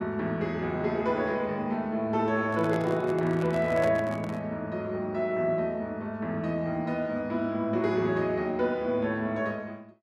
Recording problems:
microphone handling noise; from 2.5 to 4.5 s; peak -3 dB vs average level

